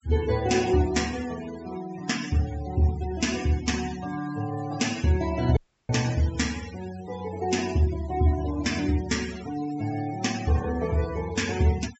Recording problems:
treble missing; nothing above 7.7 kHz
denoising artefacts; signal-to-artefact ratio 14 dB
audio cutting out; at 5.5 s

